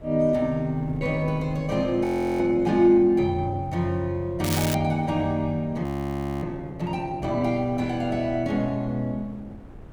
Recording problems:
wind noise; below 290 Hz, SNR 19 dB
audio freezing; at 2 s and at 6 s for 0.5 s
crackling; at 4.5 s; loose cable, SNR 7 dB

